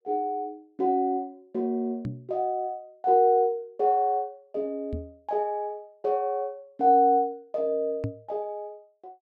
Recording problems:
knock on the microphone; at 2 s, at 5 s and at 8 s; peak -1 dB vs average level

